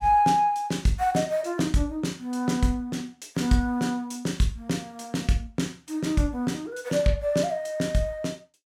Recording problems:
none

